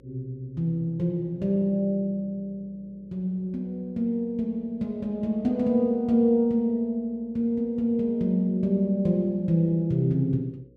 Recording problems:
mains hum; 60 Hz, harmonics up to 540 Hz, SNR 30 dB

